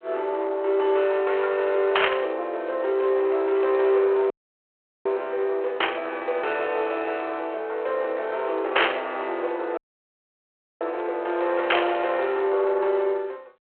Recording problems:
telephone audio; 340 Hz to 4 kHz, G.726
distorted audio; soft clipping, signal-to-distortion ratio 14 dB
burst of static; 4 times, first at 2 s; peak +8 dB vs average level
dropout; at 4.5 s for 1 s and at 10 s for 1 s

